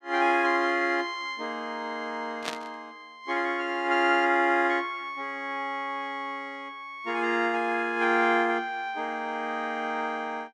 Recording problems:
burst of static; at 2.5 s; peak 0 dB vs average level

